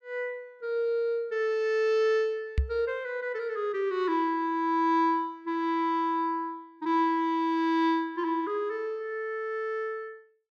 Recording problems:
microphone thump; at 2.5 s; peak +5 dB vs average level

